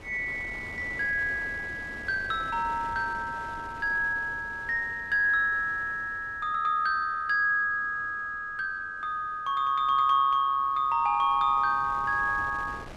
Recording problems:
wind noise; below 1.1 kHz, SNR 20 dB

